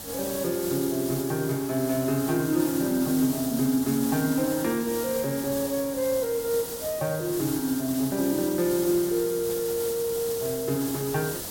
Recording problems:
background hiss; SNR 7 dB

